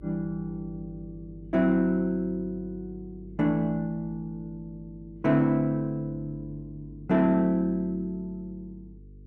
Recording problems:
hum; 50 Hz, harmonics up to 450 Hz, SNR 20 dB

